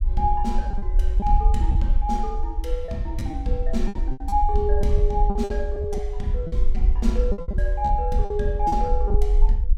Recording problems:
rumble; below 50 Hz, SNR -1 dB
lost packets; 10% of the sound replaced, filled with repeated pitch periods

